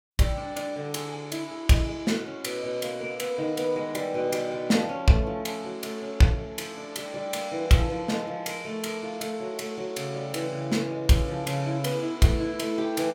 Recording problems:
none

